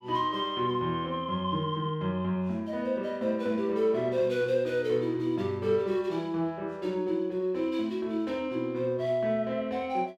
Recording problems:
none

